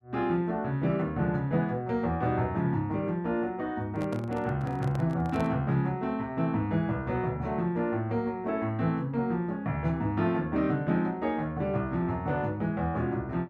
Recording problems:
microphone handling noise; from 4 to 5.5 s; peak -6 dB vs average level

